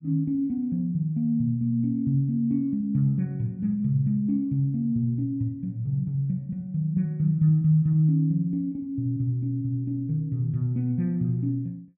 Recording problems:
none

